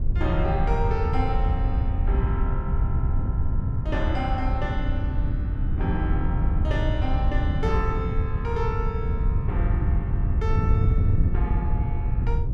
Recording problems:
wind noise; below 100 Hz, SNR -6 dB

